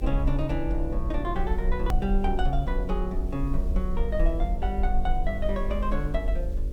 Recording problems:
hum; 50 Hz, harmonics up to 600 Hz, SNR 7 dB
hiss; slope -2 dB per octave, SNR 28 dB
rumble; below 50 Hz, SNR -1 dB
hard cut with a click; at 2 s

